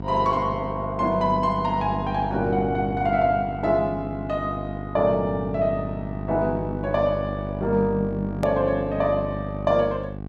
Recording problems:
electrical hum; 50 Hz, harmonics up to 1.1 kHz, SNR 8 dB
hard cut with a click; at 8.5 s

